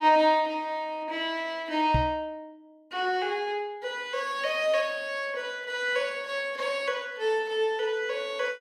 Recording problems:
microphone thump; at 2 s; peak +5 dB vs average level

